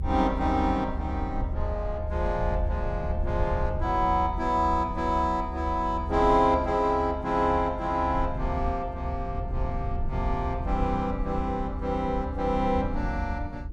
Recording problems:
low-frequency rumble; below 74 Hz, SNR 6 dB

